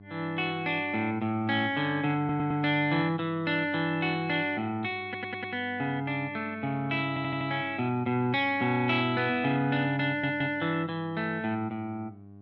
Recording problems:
hum; 50 Hz, harmonics up to 1.1 kHz, SNR 21 dB
audio stuttering; 4 times, first at 2 s

